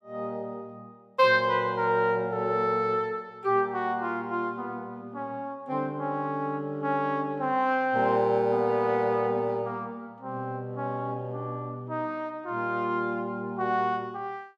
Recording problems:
none

